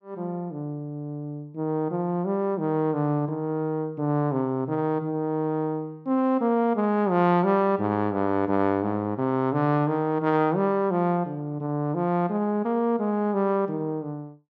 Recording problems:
none

